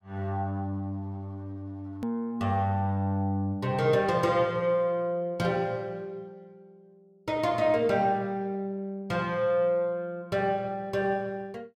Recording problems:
click at an edit; at 2 s

